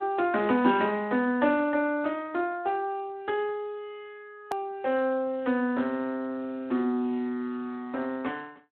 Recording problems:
telephone audio; 220 Hz to 3.7 kHz, Speex
click at an edit; at 4.5 s

